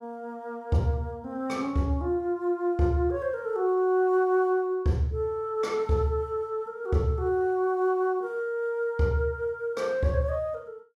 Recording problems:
none

